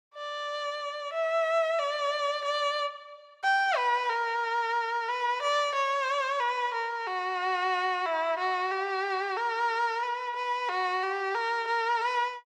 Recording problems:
none

